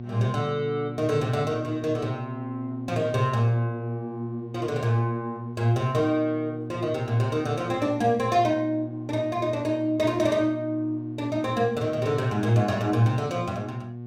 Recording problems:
electrical hum; 60 Hz, harmonics up to 720 Hz, SNR 10 dB

